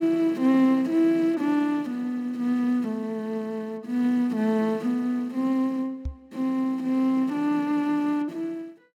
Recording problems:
microphone bump; at 6 s; peak -4 dB vs average level

